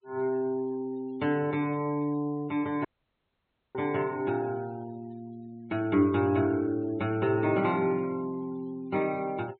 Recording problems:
treble missing; nothing above 4.2 kHz
denoising artefacts; signal-to-artefact ratio 25 dB
audio cutting out; at 3 s for 1 s

